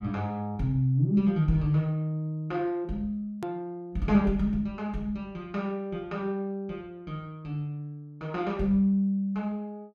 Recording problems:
hard cut with a click; at 3.5 s

